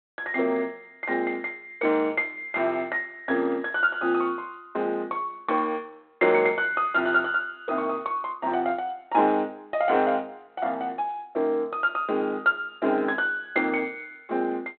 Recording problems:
phone line; 280 Hz to 3.8 kHz, G.726

